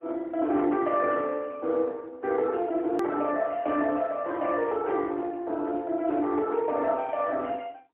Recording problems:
telephone audio; 260 Hz to 3.2 kHz, AMR-NB, then MP3
edit click; at 3 s

